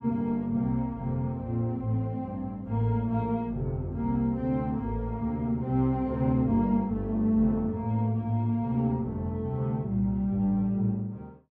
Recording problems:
none

